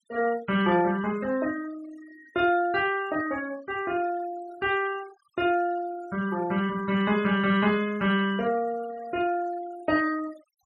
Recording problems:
denoising artefacts; signal-to-artefact ratio 18 dB

